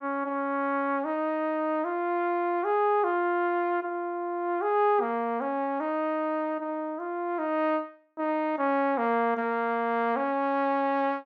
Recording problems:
none

